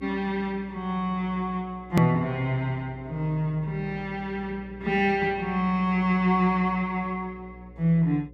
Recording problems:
electrical hum; 60 Hz, harmonics up to 540 Hz, SNR 21 dB
edit click; at 2 s

